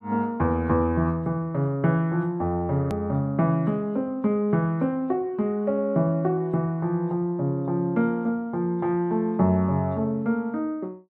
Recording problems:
click at an edit; at 3 s

